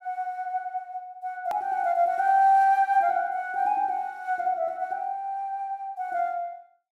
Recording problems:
click at an edit; at 1.5 s

